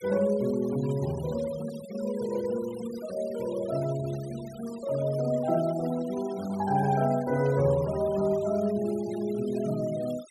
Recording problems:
noise reduction artefacts; signal-to-artefact ratio 19 dB

